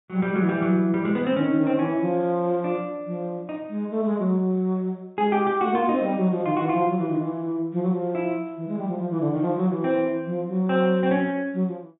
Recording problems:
low-pass filter; nothing above 3.7 kHz

